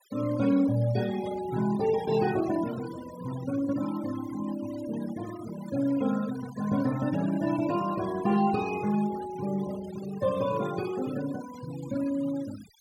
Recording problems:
noise reduction artefacts; signal-to-artefact ratio 15 dB

